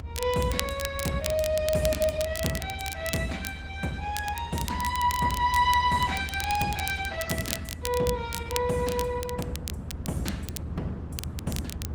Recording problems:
codec artefacts; Opus, log-spectral distance 3 dB
low-frequency rumble; below 84 Hz, strongest tone 80 Hz, SNR 6 dB
crackle; vinyl, SNR 9 dB

